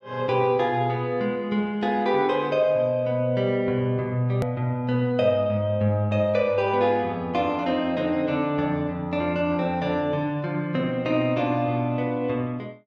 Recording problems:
click at an edit; at 4.5 s

